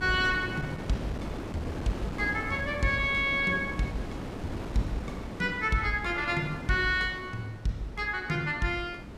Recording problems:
wind on the microphone; below 590 Hz, SNR 9 dB

